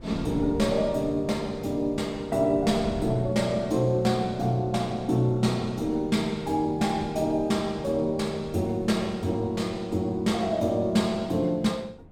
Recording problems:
wind noise; below 230 Hz, SNR 17 dB

